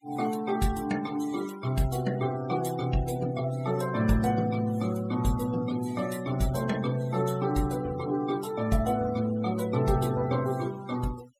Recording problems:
noise reduction artefacts; signal-to-artefact ratio 17 dB

